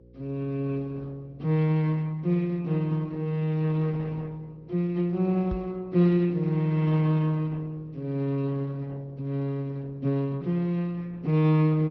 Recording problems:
low-pass filter; nothing above 5.8 kHz
lossy codec; Opus, log-spectral distance 2 dB
hum; 60 Hz, harmonics up to 540 Hz, SNR 24 dB
microphone thump; at 5.5 s; peak +3 dB vs average level

